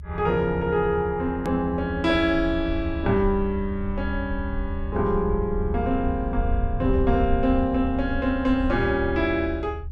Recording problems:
low-frequency rumble; below 76 Hz, SNR 7 dB
click at an edit; at 1.5 s

